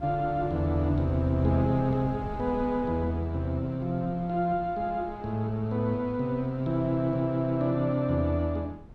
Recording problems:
wind noise; below 230 Hz, SNR 16 dB

